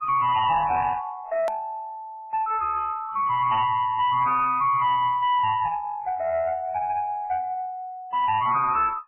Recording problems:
lossy codec; MP3, log-spectral distance 2 dB, nothing above 2.5 kHz
distorted audio; soft clipping, signal-to-distortion ratio 9 dB
click at an edit; at 1.5 s

